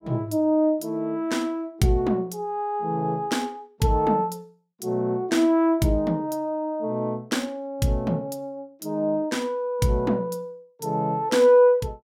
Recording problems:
none

